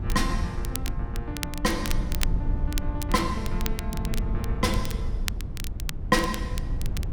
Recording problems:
low-frequency rumble; below 82 Hz, SNR 1 dB
wind noise; below 200 Hz, SNR 13 dB
crackle; vinyl, SNR 8 dB

